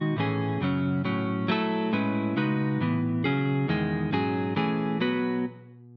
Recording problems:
hum; 60 Hz, harmonics up to 480 Hz, SNR 21 dB

